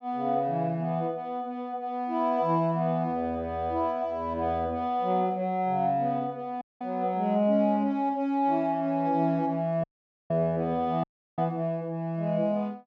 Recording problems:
dropout; at 6.5 s, at 10 s and at 11 s

